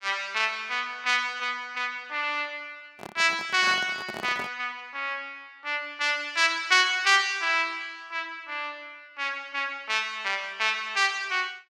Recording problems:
handling noise; from 3 to 4.5 s; peak -7 dB vs average level

